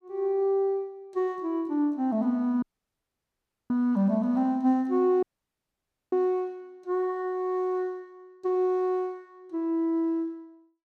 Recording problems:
dropout; at 2.5 s for 1 s and at 5 s for 1 s

